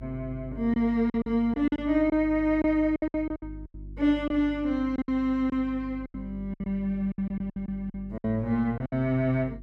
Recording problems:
electrical hum; 50 Hz, harmonics up to 350 Hz, SNR 16 dB
lost packets; 12% of the sound replaced, filled with silence

